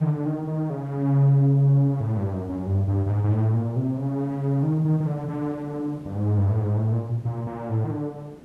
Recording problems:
background hiss; SNR 23 dB

